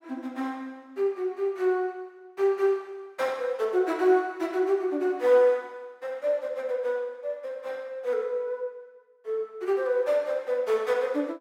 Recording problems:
none

